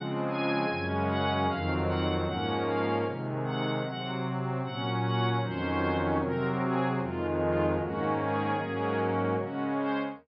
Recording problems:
treble missing; nothing above 5.5 kHz

